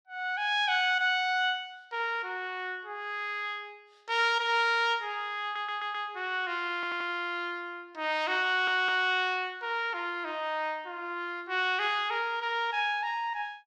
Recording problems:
audio stuttering; at 5.5 s, at 7 s and at 8.5 s

